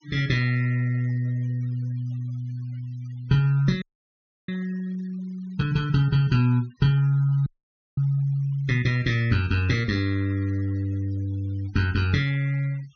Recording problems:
treble missing; nothing above 6.6 kHz
denoising artefacts; signal-to-artefact ratio 26 dB
audio freezing; at 4 s for 0.5 s and at 7.5 s for 0.5 s

